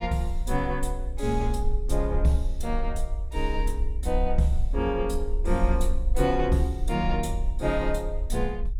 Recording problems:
rumble; below 54 Hz, SNR 2 dB

